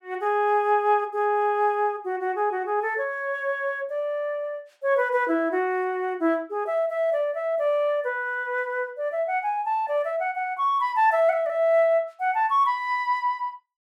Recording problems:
none

